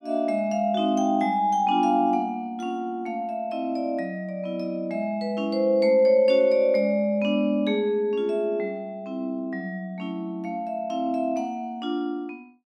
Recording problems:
none

